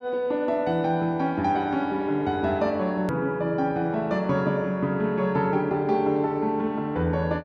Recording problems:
edit click; at 3 s

